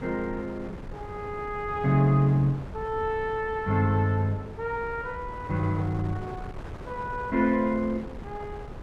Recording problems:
wind on the microphone; below 440 Hz, SNR 14 dB

